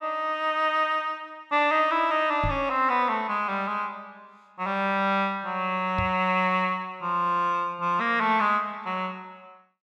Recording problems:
microphone thump; at 2.5 s and at 6 s; peak -2 dB vs average level

